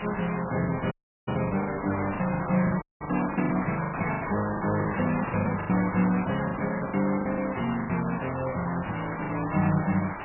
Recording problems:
codec artefacts; MP3, log-spectral distance 15 dB, nothing above 2.7 kHz
hiss; SNR 6 dB
lost packets; 13% of the sound replaced, filled with the last packet
dropout; at 1 s and at 3 s
burst of static; at 4 s and at 8 s; peak -5 dB vs average level

